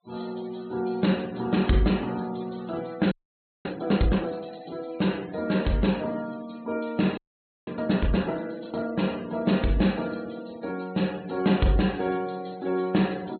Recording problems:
treble cut off; nothing above 4.2 kHz
noise reduction artefacts; signal-to-artefact ratio 21 dB
frozen audio; at 3 s for 0.5 s and at 7 s

